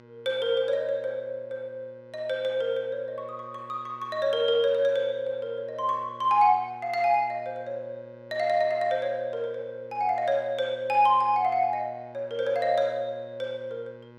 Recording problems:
mains hum; 60 Hz, harmonics up to 2.2 kHz, SNR 23 dB

